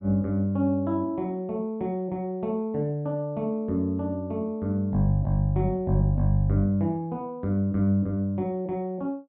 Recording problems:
treble missing; nothing above 4 kHz

